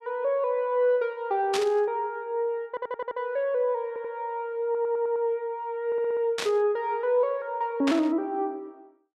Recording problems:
burst of static; at 1.5 s, at 6.5 s and at 8 s; peak +1 dB vs average level
audio stuttering; 4 times, first at 2.5 s

